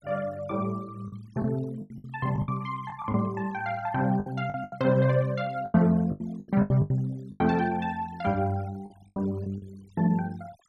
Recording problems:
denoising artefacts; signal-to-artefact ratio 24 dB
lost packets; 11% of the sound replaced, filled with the last packet

